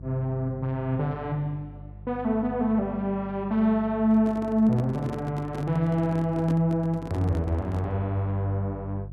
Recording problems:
electrical hum; 50 Hz, harmonics up to 500 Hz, SNR 16 dB
handling noise; from 4 to 8 s; peak -5 dB vs average level

